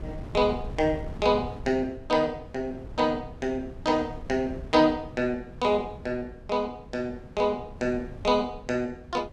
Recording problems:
wind noise; below 190 Hz, SNR 15 dB

